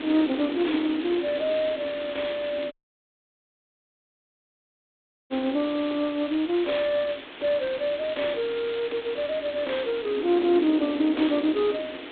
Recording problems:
phone line; 240 Hz to 3.9 kHz, G.726
hiss; SNR 14 dB
wind noise; below 430 Hz, SNR 11 dB
dropout; at 2.5 s for 2.5 s

